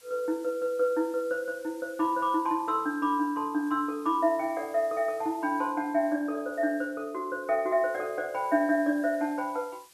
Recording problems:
background hiss; slope +1 dB per octave, SNR 26 dB

